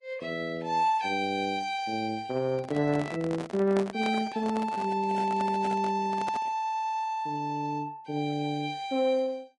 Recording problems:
codec artefacts; Vorbis, log-spectral distance 2 dB, nothing above 9.8 kHz
handling noise; from 2.5 to 7 s; peak -3 dB vs average level
stutter; at 6.5 s

